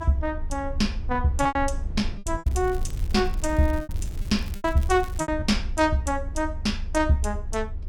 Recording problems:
low-frequency rumble; below 78 Hz, strongest tone 26 Hz, SNR 7 dB
lost packets; 7% of the sound replaced, filled with repeated pitch periods
crackle; from 2.5 to 5.5 s; loose cable, SNR 22 dB

